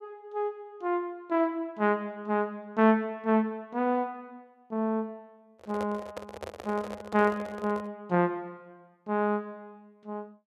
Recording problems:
microphone handling noise; from 5.5 to 8 s; peak -4 dB vs average level

